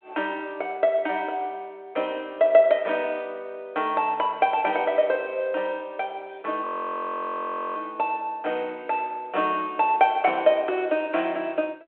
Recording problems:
telephone audio; 300 Hz to 3.3 kHz, G.726
frozen audio; at 6.5 s for 1 s

